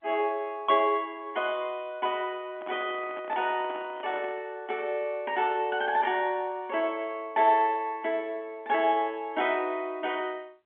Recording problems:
telephone audio; 260 Hz to 3.4 kHz, G.711
handling noise; from 2.5 to 4.5 s; peak -9 dB vs average level

